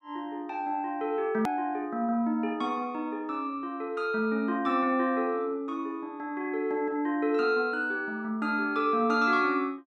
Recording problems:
click at an edit; at 1.5 s

